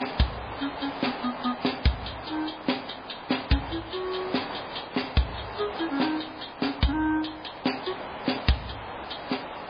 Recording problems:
codec artefacts; MP3, log-spectral distance 13 dB
background hiss; SNR 8 dB

